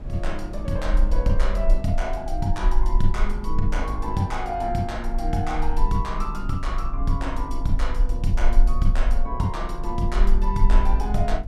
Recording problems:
hum; 50 Hz, harmonics up to 300 Hz, SNR 13 dB
rumble; below 38 Hz, strongest tone 20 Hz, SNR -1 dB
wind on the microphone; below 230 Hz, SNR 17 dB

